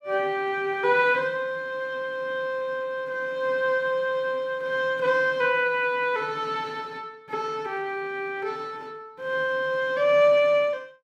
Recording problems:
none

